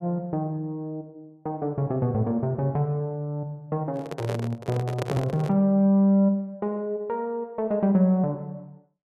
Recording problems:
handling noise; from 4 to 5.5 s; peak -1 dB vs average level

